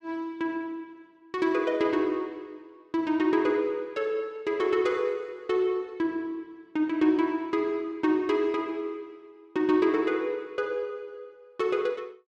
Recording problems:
none

